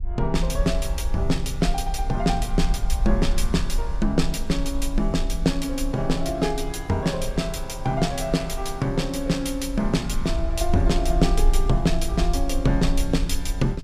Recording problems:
low-frequency rumble; below 46 Hz, SNR 4 dB

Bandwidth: 14.5 kHz